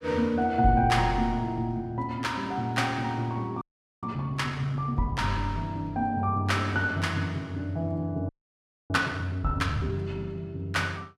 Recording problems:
frozen audio; at 3.5 s and at 8.5 s for 0.5 s

